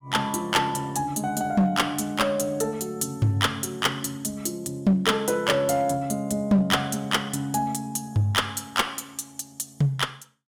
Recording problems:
distortion; hard clipping, uneven, signal-to-distortion ratio 12 dB

